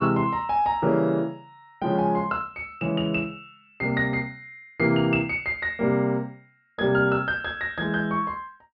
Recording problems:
treble missing; nothing above 5.5 kHz

